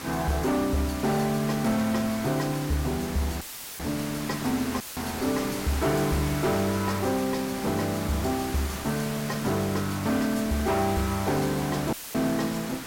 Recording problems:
distortion; hard clipping, signal-to-distortion ratio 12 dB
hiss; slope -3 dB per octave, SNR 8 dB
dropout; at 3.5 s, at 5 s and at 12 s; filled with static

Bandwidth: 16.5 kHz